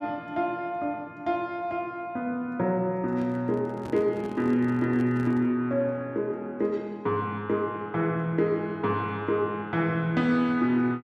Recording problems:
handling noise; from 3 to 5.5 s; peak -9 dB vs average level

